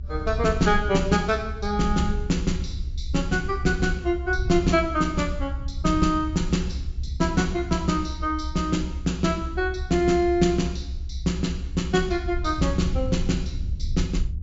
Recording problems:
treble cut off; nothing above 7.4 kHz
rumble; below 72 Hz, SNR 6 dB

